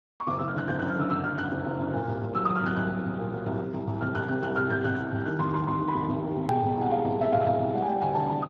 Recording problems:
lossy compression; Speex, log-spectral distance 3 dB, nothing above 13.1 kHz
hard cut with a click; at 6.5 s

